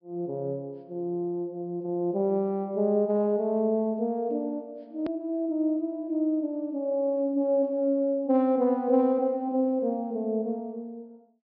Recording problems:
low-pass filter; nothing above 5.5 kHz
click at an edit; at 5 s

